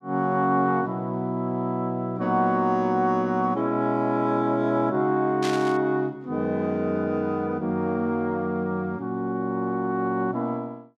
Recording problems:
static burst; at 5.5 s; peak -3 dB vs average level

